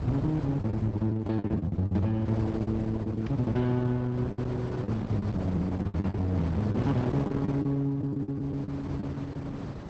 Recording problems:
lossy compression; Opus, log-spectral distance 2 dB
distortion; hard clipping, signal-to-distortion ratio 12 dB
wind on the microphone; below 320 Hz, SNR 7 dB
packet loss; 12% of the sound replaced, filled with the last packet

